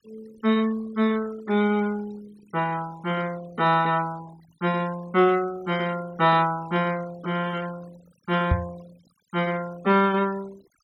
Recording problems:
denoising artefacts; signal-to-artefact ratio 22 dB
knock on the microphone; at 8.5 s; peak +6 dB vs average level

